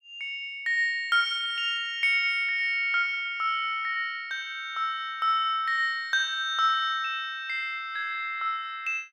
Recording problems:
none

